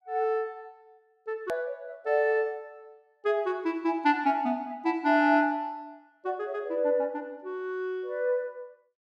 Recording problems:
click at an edit; at 1.5 s

